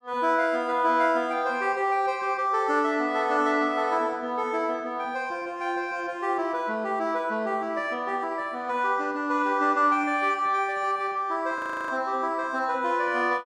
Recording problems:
frozen audio; at 12 s

